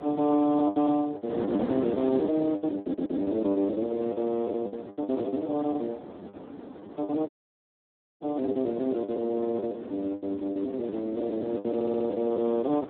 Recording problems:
telephone audio; 190 Hz to 3.1 kHz, Speex
wind noise; below 510 Hz, SNR 9 dB
lost packets; 14% of the sound replaced, filled with the last packet
stutter; at 3 s and at 12 s
audio cutting out; at 7.5 s for 1 s

